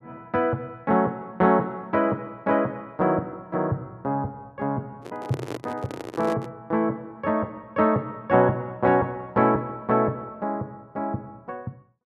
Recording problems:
microphone handling noise; from 5 to 6.5 s; peak -4 dB vs average level

